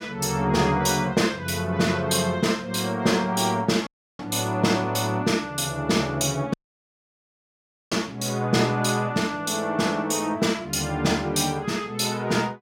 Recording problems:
dropout; at 4 s and at 6.5 s for 1.5 s

